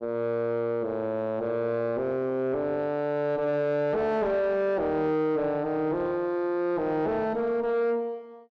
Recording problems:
distorted audio; soft clipping, signal-to-distortion ratio 6 dB

